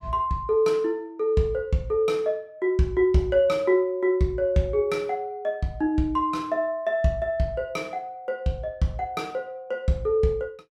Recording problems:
none

